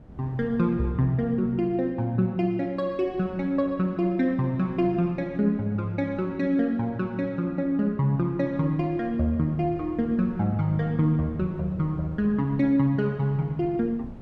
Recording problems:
wind noise; below 270 Hz, SNR 21 dB

